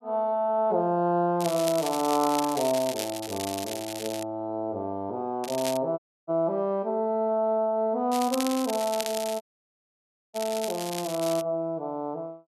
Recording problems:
crackle; from 1.5 to 4 s, at 5.5 s and from 8 to 11 s; loose cable, SNR 9 dB
audio cutting out; at 6 s and at 9.5 s for 1 s

